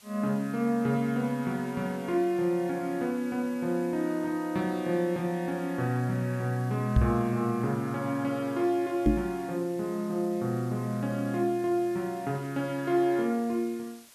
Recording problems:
background hiss; slope +1 dB per octave, SNR 24 dB
knock on the microphone; at 7 s and at 9 s; peak +9 dB vs average level

